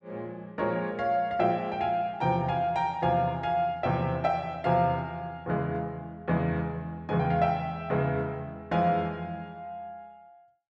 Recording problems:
none

